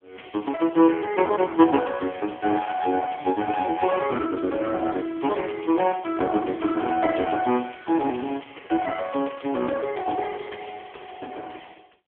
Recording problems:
phone line; 240 Hz to 3.2 kHz, AMR-NB

